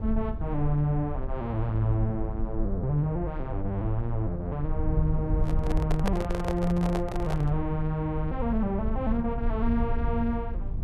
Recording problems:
rumble; below 74 Hz, SNR 4 dB
handling noise; from 5.5 to 7.5 s; peak +3 dB vs average level

